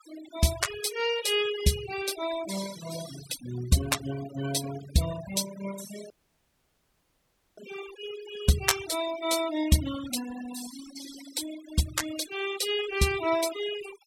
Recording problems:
denoising artefacts; signal-to-artefact ratio 11 dB
audio cutting out; at 6 s for 1.5 s

